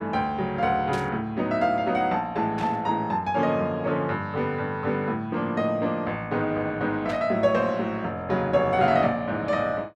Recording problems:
static burst; at 1 s, at 2.5 s and at 7 s; peak -9 dB vs average level

